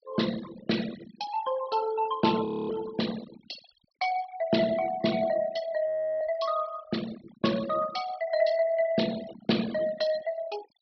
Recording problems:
low-pass filter; nothing above 5.5 kHz
noise reduction artefacts; signal-to-artefact ratio 15 dB
frozen audio; at 2.5 s and at 6 s

